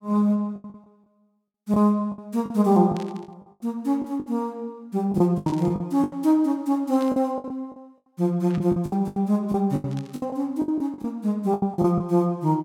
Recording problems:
lost packets; 13% of the sound replaced, filled with the last packet
static burst; 5 times, first at 3 s; peak -14 dB vs average level

